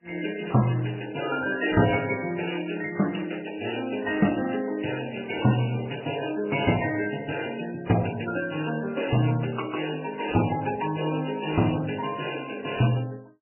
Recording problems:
lossy compression; MP3, then AAC, log-spectral distance 12 dB, nothing above 2.9 kHz

